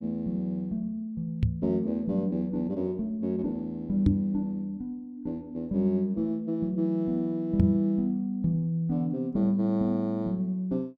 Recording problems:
microphone bump; at 1.5 s, at 4 s and at 7.5 s; peak +9 dB vs average level

